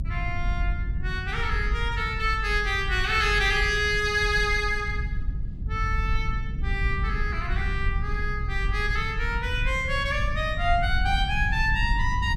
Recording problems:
low-frequency rumble; below 78 Hz, SNR 4 dB

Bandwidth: 15 kHz